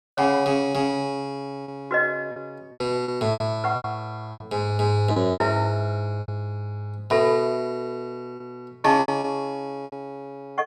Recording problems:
packet loss; 8% of the sound replaced, filled with repeated pitch periods

